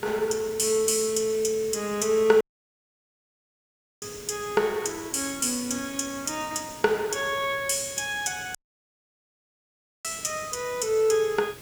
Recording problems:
hiss; SNR 17 dB
audio cutting out; at 2.5 s for 1.5 s and at 8.5 s for 1.5 s

